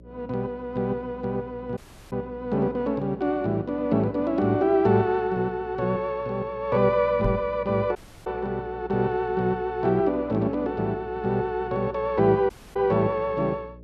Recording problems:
hum; 60 Hz, harmonics up to 600 Hz, SNR 21 dB
audio cutting out; at 2 s, at 8 s and at 13 s
knock on the microphone; at 7 s; peak +2 dB vs average level

